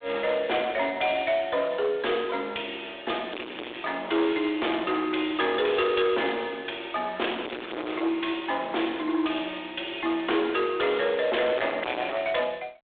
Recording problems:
phone line; 280 Hz to 3.6 kHz, G.726
distorted audio; hard clipping, signal-to-distortion ratio 4 dB

